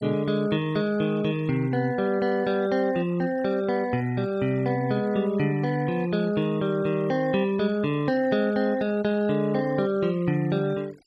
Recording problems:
noise reduction artefacts; signal-to-artefact ratio 23 dB

